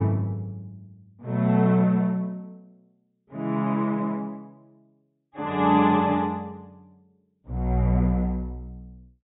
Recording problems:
treble cut off; nothing above 4 kHz

